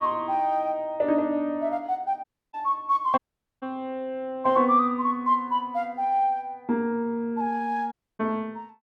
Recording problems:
audio cutting out; at 2 s, at 3 s and at 8 s

